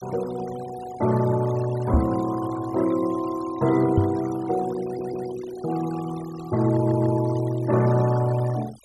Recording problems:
denoising artefacts; signal-to-artefact ratio 18 dB
microphone bump; at 2 s and at 4 s; peak +7 dB vs average level
stutter; at 5 s and at 6.5 s

